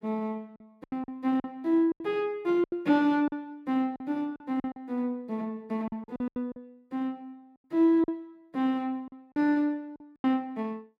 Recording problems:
lost packets; 11% of the sound replaced, filled with silence

